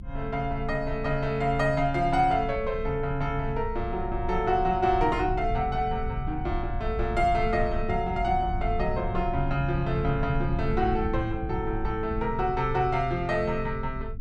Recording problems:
rumble; below 90 Hz, strongest tone 22 Hz, SNR 8 dB

